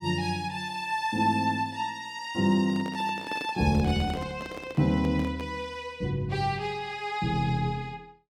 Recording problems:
handling noise; from 2.5 to 5.5 s; peak -6 dB vs average level

